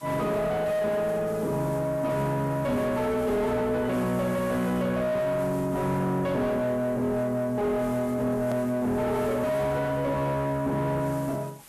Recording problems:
distorted audio; soft clipping, signal-to-distortion ratio 7 dB
hiss; slope -1 dB per octave, SNR 23 dB
edit click; at 8.5 s

